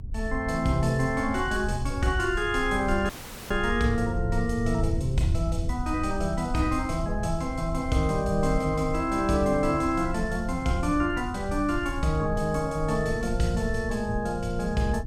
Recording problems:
rumble; below 84 Hz, SNR 8 dB
dropout; at 3 s

